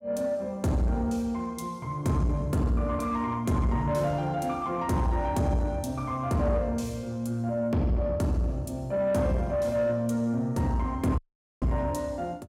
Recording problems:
distortion; soft clipping, signal-to-distortion ratio 12 dB
audio cutting out; at 11 s

